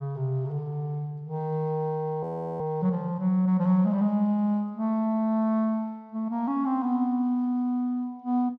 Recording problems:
audio freezing; at 2 s

